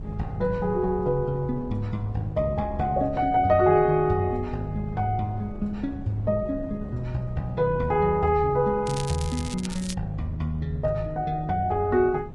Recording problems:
lossy compression; Vorbis, log-spectral distance 2 dB
wind on the microphone; below 170 Hz, SNR 13 dB
crackling; from 9 to 10 s; loose cable, SNR 13 dB

